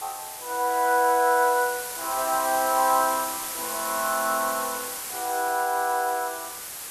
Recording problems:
background hiss; slope 0 dB per octave, SNR 7 dB

